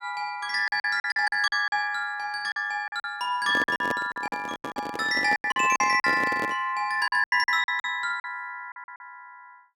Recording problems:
lost packets; 14% of the sound replaced, filled with silence
handling noise; from 3.5 to 6.5 s; peak -2 dB vs average level

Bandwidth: 17 kHz